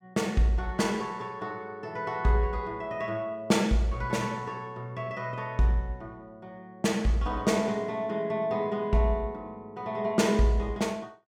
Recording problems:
none

